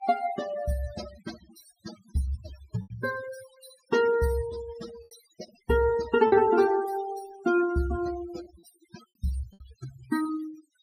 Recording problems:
denoising artefacts; signal-to-artefact ratio 14 dB
lost packets; 4% of the sound replaced, filled with repeated pitch periods

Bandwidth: 15.5 kHz